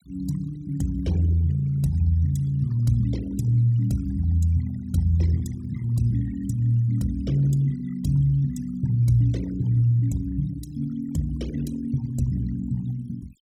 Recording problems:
denoising artefacts; signal-to-artefact ratio 21 dB

